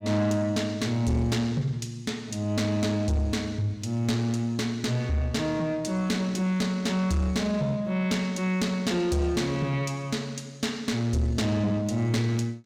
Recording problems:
distortion; soft clipping, signal-to-distortion ratio 11 dB

